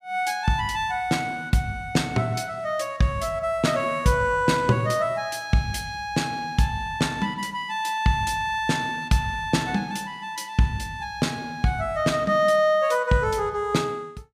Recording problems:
none

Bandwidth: 15.5 kHz